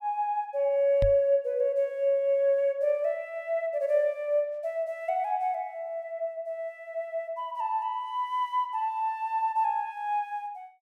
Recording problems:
knock on the microphone; at 1 s; peak +1 dB vs average level

